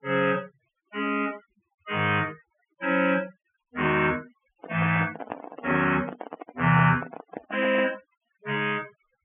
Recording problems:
treble missing; nothing above 3.2 kHz
noise reduction artefacts; signal-to-artefact ratio 21 dB
microphone handling noise; from 4.5 to 8 s; peak -4 dB vs average level

